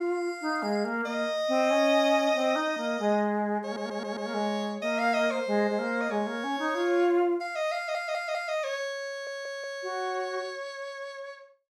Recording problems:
stutter; at 3.5 s, at 8 s and at 9 s

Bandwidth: 16.5 kHz